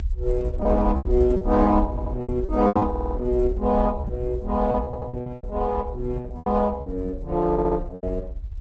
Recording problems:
lossy codec; Opus, log-spectral distance 2 dB
low-frequency rumble; below 68 Hz, SNR 7 dB
packet loss; 11% of the sound replaced, filled with repeated pitch periods
audio stuttering; 4 times, first at 2 s

